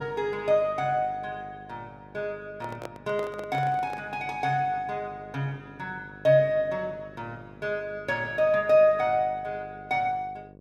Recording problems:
hum; 50 Hz, harmonics up to 700 Hz, SNR 22 dB
microphone handling noise; from 2.5 to 4 s; peak -6 dB vs average level

